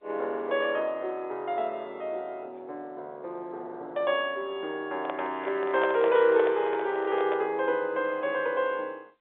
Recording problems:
telephone audio; 300 Hz to 3.8 kHz, G.711
handling noise; from 5 to 7.5 s; peak +1 dB vs average level

